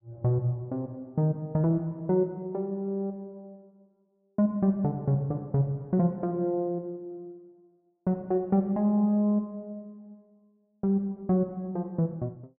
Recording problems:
none

